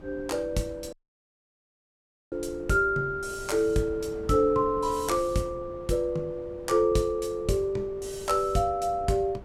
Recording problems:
wind on the microphone; below 370 Hz, SNR 19 dB
dropout; at 1 s for 1.5 s

